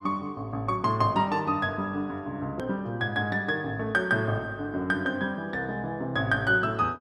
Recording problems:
hard cut with a click; at 2.5 s

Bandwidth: 12 kHz